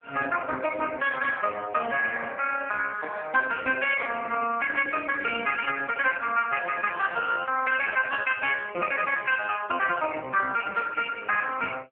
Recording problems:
phone line; 300 Hz to 3.3 kHz, AMR-NB

